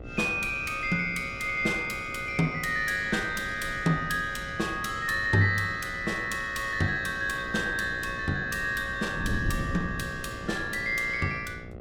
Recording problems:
hum; 60 Hz, harmonics up to 2 kHz, SNR 19 dB
wind noise; below 200 Hz, SNR 13 dB

